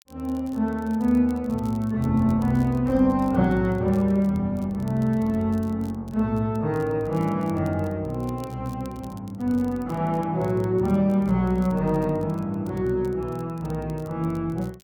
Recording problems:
crackle; vinyl, SNR 29 dB

